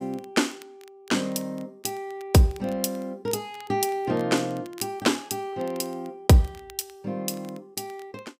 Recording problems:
crackle; vinyl, SNR 27 dB

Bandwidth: 15.5 kHz